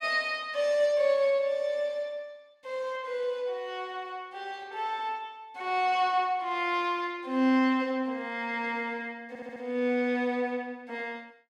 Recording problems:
audio stuttering; at 9.5 s

